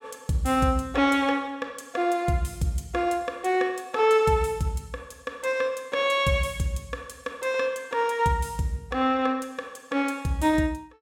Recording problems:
none

